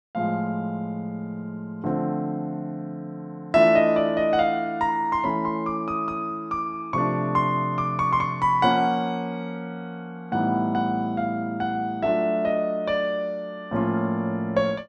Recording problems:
none

